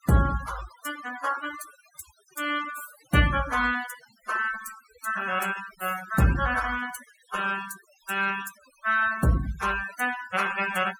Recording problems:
denoising artefacts; signal-to-artefact ratio 14 dB

